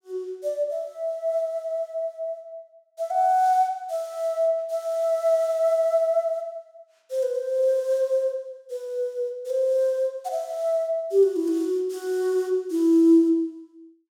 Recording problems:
none

